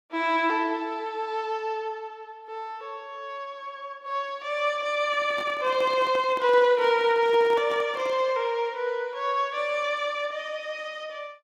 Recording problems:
microphone handling noise; from 5 to 8.5 s; peak -9 dB vs average level

